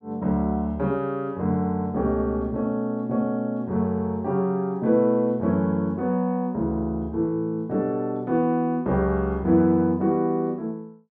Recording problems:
none

